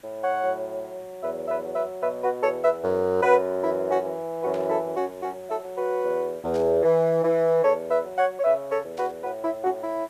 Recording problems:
hiss; SNR 28 dB
static burst; at 4.5 s, at 6.5 s and at 9 s; peak -15 dB vs average level

